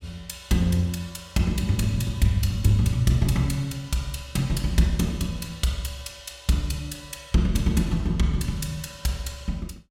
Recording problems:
none

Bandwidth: 16 kHz